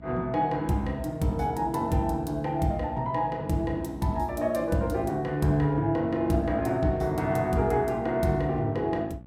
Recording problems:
hum; 60 Hz, harmonics up to 600 Hz, SNR 20 dB

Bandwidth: 16.5 kHz